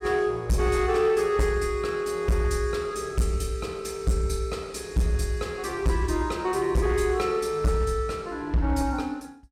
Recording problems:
distorted audio; hard clipping, signal-to-distortion ratio 10 dB

